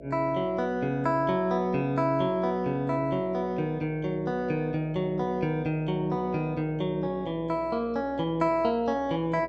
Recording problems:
hum; 60 Hz, harmonics up to 660 Hz, SNR 17 dB

